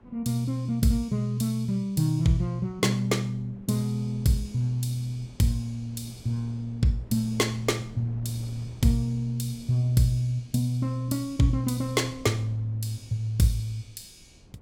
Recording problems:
wind on the microphone; below 280 Hz, SNR 23 dB

